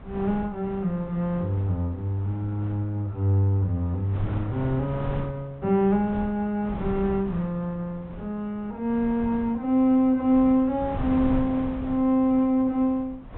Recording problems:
treble cut off; nothing above 3.8 kHz
wind on the microphone; below 280 Hz, SNR 13 dB

